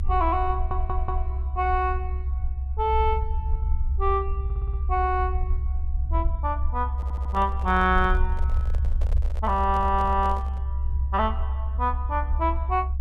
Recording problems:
rumble; below 68 Hz, SNR 2 dB
stutter; 4 times, first at 0.5 s
microphone handling noise; from 7 to 11 s; peak -10 dB vs average level

